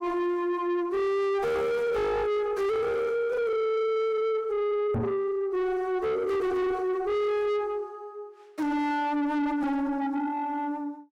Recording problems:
distorted audio; soft clipping, signal-to-distortion ratio 7 dB
microphone thump; at 5 s; peak +3 dB vs average level

